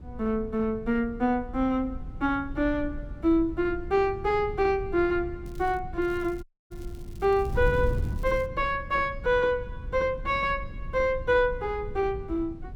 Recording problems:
wind on the microphone; below 110 Hz, SNR 11 dB
crackling; at 5.5 s and from 6 to 8.5 s; loose cable, SNR 29 dB
audio cutting out; at 6.5 s

